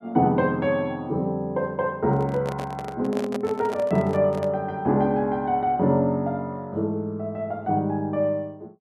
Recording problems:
microphone handling noise; from 2 to 4.5 s; peak -4 dB vs average level

